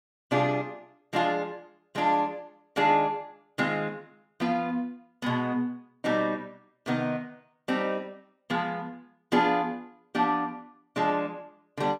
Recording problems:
none

